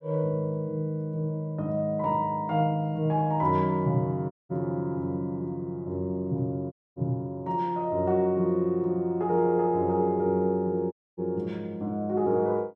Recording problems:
dropout; at 4.5 s, at 6.5 s and at 11 s

